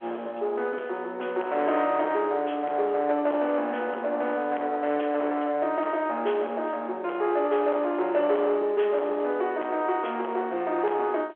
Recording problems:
telephone audio; 320 Hz to 3.2 kHz, G.711
distortion; soft clipping, signal-to-distortion ratio 12 dB

